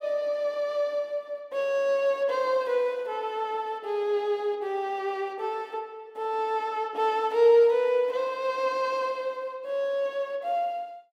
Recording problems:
none

